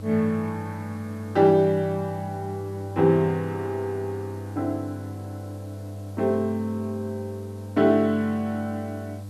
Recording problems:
hum; 50 Hz, harmonics up to 800 Hz, SNR 11 dB
hiss; slope +1 dB per octave, SNR 30 dB

